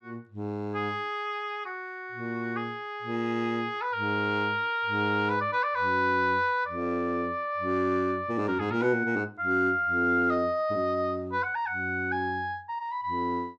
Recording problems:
none

